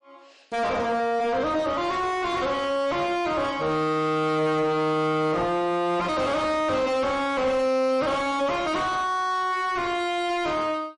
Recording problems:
lossy compression; MP3, log-spectral distance 2 dB, nothing above 10.4 kHz
distorted audio; soft clipping, signal-to-distortion ratio 7 dB

